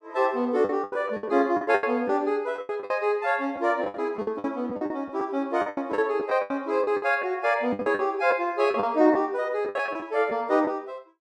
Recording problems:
lost packets; 15% of the sound replaced, filled with the last packet

